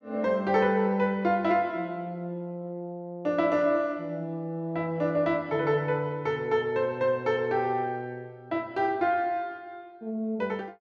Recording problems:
none

